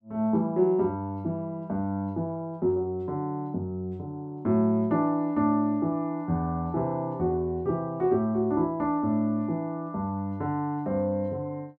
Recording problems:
none

